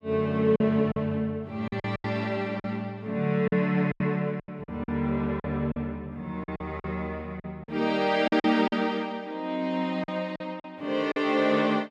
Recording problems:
lost packets; 9% of the sound replaced, filled with silence

